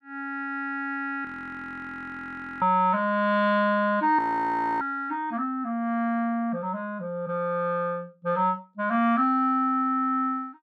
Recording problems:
audio freezing; at 1.5 s for 1.5 s and at 4 s for 0.5 s

